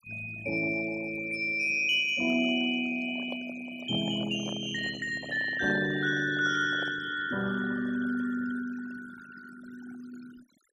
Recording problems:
noise reduction artefacts; signal-to-artefact ratio 16 dB
microphone handling noise; from 3 to 7 s; peak -8 dB vs average level

